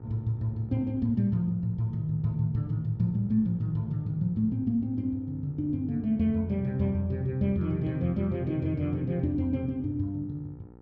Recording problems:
hum; 60 Hz, harmonics up to 1.4 kHz, SNR 23 dB

